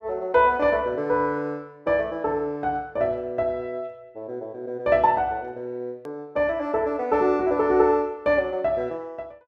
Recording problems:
hard cut with a click; at 6 s

